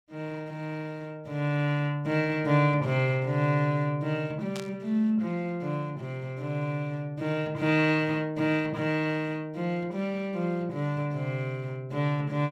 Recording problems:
static burst; at 4.5 s; peak -7 dB vs average level

